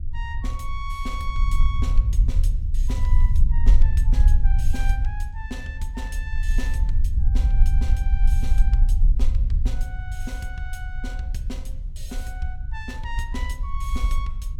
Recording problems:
rumble; below 54 Hz, SNR -11 dB

